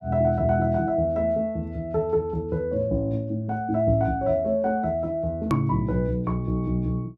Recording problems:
hard cut with a click; at 5.5 s

